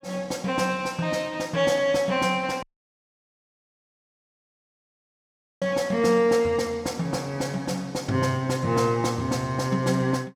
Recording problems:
dropout; at 2.5 s for 3 s

